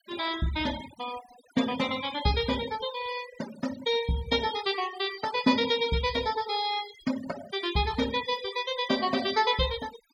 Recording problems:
denoising artefacts; signal-to-artefact ratio 13 dB

